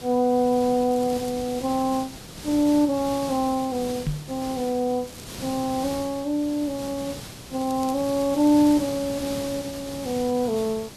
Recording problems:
background hiss; slope -3 dB per octave, SNR 12 dB
crackling; at 1 s, at 5 s and from 7.5 to 9 s; loose cable, SNR 23 dB
microphone bump; at 4 s; peak 0 dB vs average level

